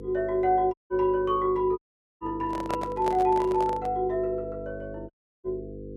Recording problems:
hum; 50 Hz, harmonics up to 500 Hz, SNR 14 dB
audio cutting out; at 0.5 s, at 2 s and at 5 s
microphone handling noise; from 2.5 to 4 s; peak -2 dB vs average level

